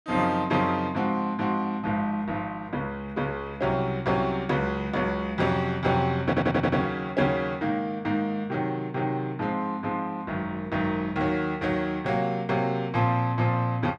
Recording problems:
audio stuttering; at 6 s

